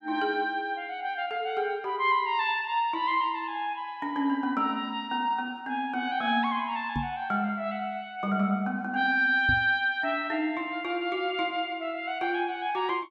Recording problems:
microphone bump; at 7 s and at 9.5 s; peak 0 dB vs average level

